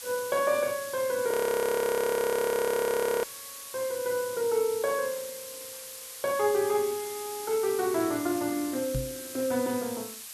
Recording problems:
background hiss; slope +4 dB per octave, SNR 10 dB
frozen audio; at 1.5 s for 2 s
microphone thump; at 9 s; peak 0 dB vs average level

